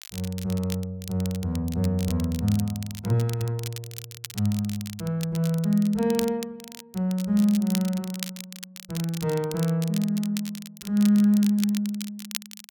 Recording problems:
crackling; vinyl, SNR 14 dB

